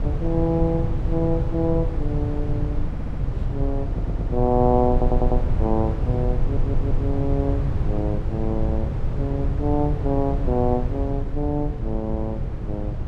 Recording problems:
low-frequency rumble; below 120 Hz, SNR 0 dB
wind on the microphone; below 190 Hz, SNR 14 dB
stutter; 4 times, first at 3 s

